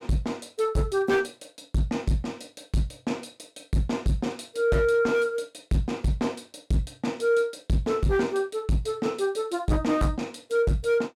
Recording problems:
distorted audio; hard clipping, signal-to-distortion ratio 11 dB

